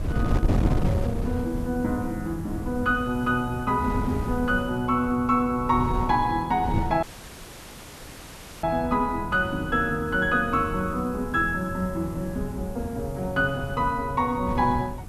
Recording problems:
hiss; slope +4 dB per octave, SNR 27 dB
wind on the microphone; below 190 Hz, SNR 7 dB
audio cutting out; at 7 s for 1.5 s

